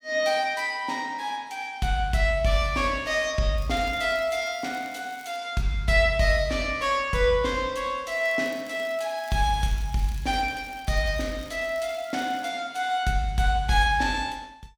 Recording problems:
crackling; from 3.5 to 5.5 s and from 8 to 13 s; loose cable, SNR 24 dB

